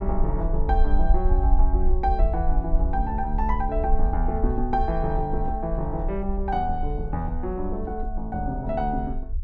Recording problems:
rumble; below 52 Hz, SNR 0 dB

